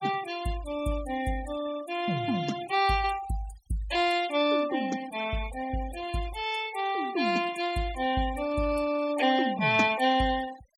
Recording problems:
denoising artefacts; signal-to-artefact ratio 15 dB

